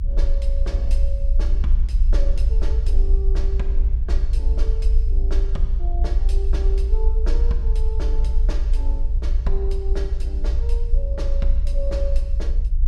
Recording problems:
low-frequency rumble; below 56 Hz, strongest tone 28 Hz, SNR -13 dB

